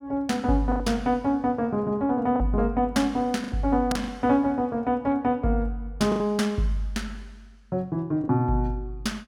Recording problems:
packet loss; 4% of the sound replaced, filled with the last packet

